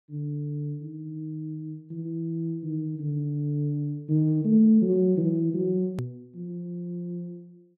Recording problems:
edit click; at 6 s

